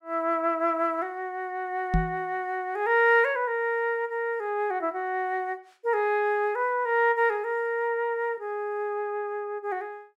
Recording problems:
knock on the microphone; at 2 s; peak +5 dB vs average level

